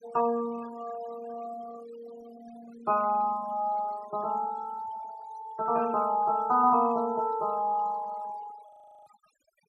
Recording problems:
denoising artefacts; signal-to-artefact ratio 21 dB
audio freezing; at 8.5 s

